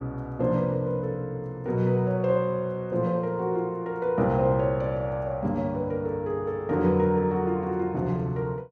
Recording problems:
none

